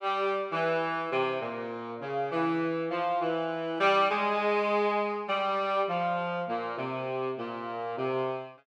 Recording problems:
none

